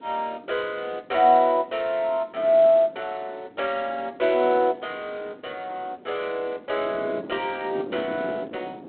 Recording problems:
telephone audio; 260 Hz to 3.9 kHz, G.726
wind noise; below 440 Hz, SNR 18 dB

